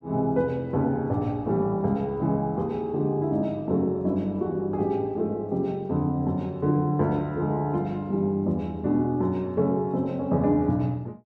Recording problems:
none

